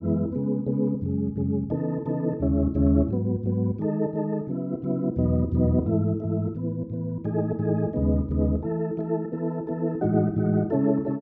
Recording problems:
none

